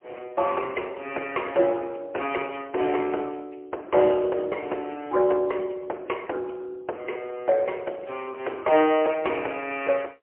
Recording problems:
telephone audio; 300 Hz to 3.1 kHz, AMR-NB, then MP3

